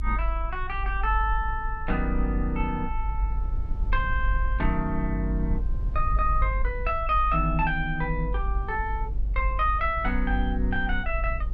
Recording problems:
low-frequency rumble; below 50 Hz, strongest tone 48 Hz, SNR 2 dB

